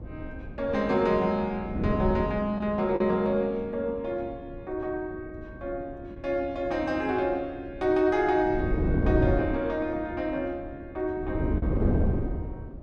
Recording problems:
wind noise; below 300 Hz, SNR 3 dB
packet loss; 1% of the sound replaced, filled with the last packet

